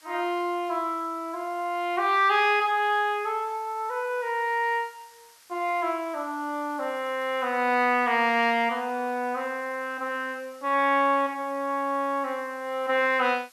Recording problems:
background hiss; SNR 27 dB

